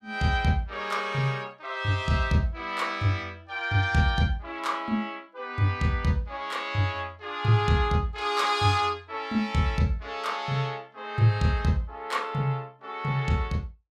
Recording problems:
none

